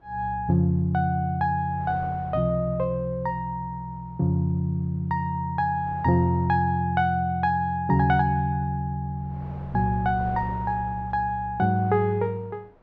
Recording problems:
wind noise; below 780 Hz, SNR 23 dB

